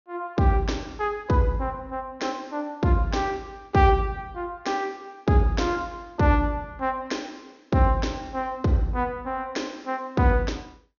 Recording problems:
treble missing; nothing above 6.7 kHz

